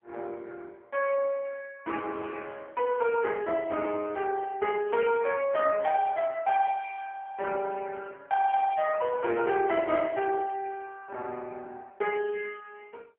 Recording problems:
telephone audio; 280 Hz to 3.1 kHz, AMR-NB

